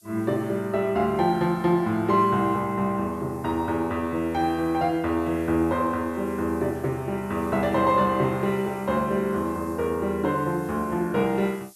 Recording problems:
hiss; SNR 27 dB

